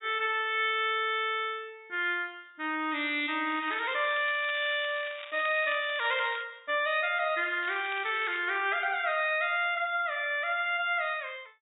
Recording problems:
low-pass filter; nothing above 4 kHz
crackling; from 3.5 to 6.5 s and at 7.5 s; loose cable, SNR 15 dB

